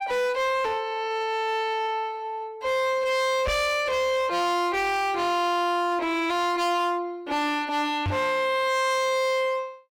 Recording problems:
distorted audio; hard clipping, uneven, signal-to-distortion ratio 6 dB
microphone bump; at 3.5 s and at 8 s; peak 0 dB vs average level

